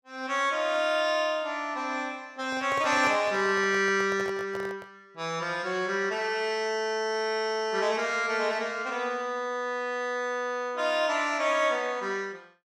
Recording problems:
handling noise; from 2.5 to 5 s; peak -4 dB vs average level

